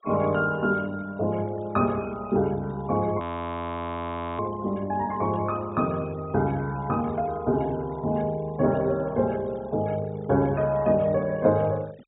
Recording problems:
treble missing; nothing above 4 kHz
noise reduction artefacts; signal-to-artefact ratio 25 dB
frozen audio; at 3 s for 1 s

